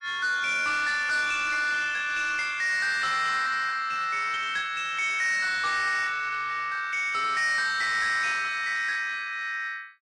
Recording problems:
lossy codec; MP3, log-spectral distance 2 dB, nothing above 9.2 kHz
distorted audio; soft clipping, signal-to-distortion ratio 11 dB

